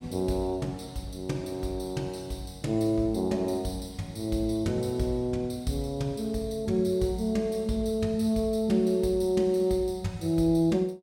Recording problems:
none

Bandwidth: 16.5 kHz